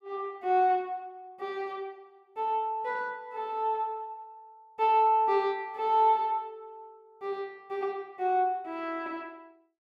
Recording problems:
none

